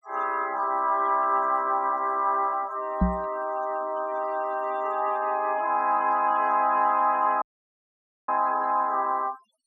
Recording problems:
noise reduction artefacts; signal-to-artefact ratio 22 dB
knock on the microphone; at 3 s; peak +5 dB vs average level
audio cutting out; at 7.5 s for 1 s

